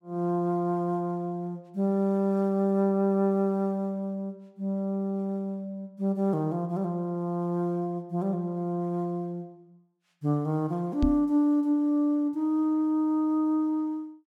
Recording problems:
microphone bump; at 11 s; peak +6 dB vs average level

